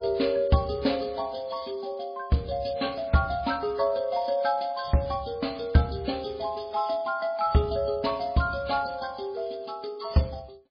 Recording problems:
lossy compression; MP3, log-spectral distance 5 dB, nothing above 4.1 kHz

